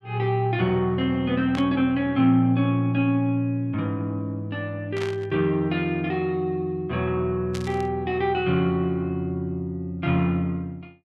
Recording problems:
burst of static; at 1.5 s, at 5 s and at 7.5 s; peak -6 dB vs average level

